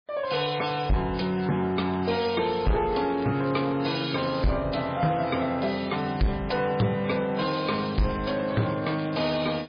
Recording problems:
lossy compression; MP3, log-spectral distance 7 dB
distortion; soft clipping, signal-to-distortion ratio 7 dB
crackle; 4 times, first at 1.5 s; loose cable, SNR 21 dB

